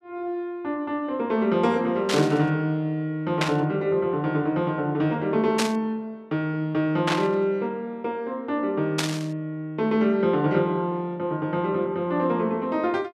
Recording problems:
burst of static; 5 times, first at 2 s; peak +3 dB vs average level

